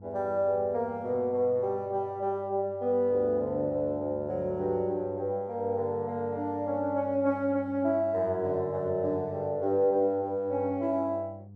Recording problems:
mains hum; 50 Hz, harmonics up to 500 Hz, SNR 18 dB

